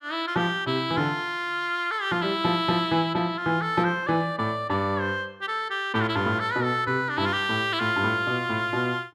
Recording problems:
none

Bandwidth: 13.5 kHz